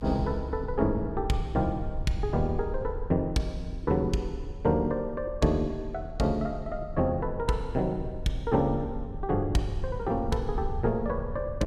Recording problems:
rumble; below 80 Hz, SNR 10 dB

